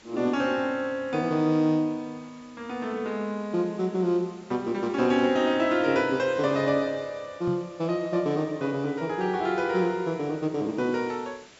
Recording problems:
treble cut off; nothing above 8 kHz
hiss; slope -2 dB per octave, SNR 27 dB
microphone thump; at 7.5 s; peak -3 dB vs average level

